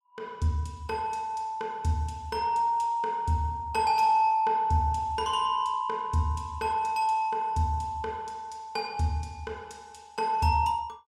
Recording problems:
none

